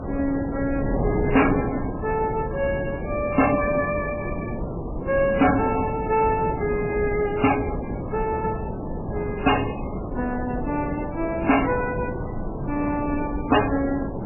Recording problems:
lossy compression; MP3, then MP3, log-spectral distance 4 dB, nothing above 2.8 kHz
distorted audio; hard clipping, signal-to-distortion ratio 7 dB
wind noise; below 450 Hz, SNR 6 dB

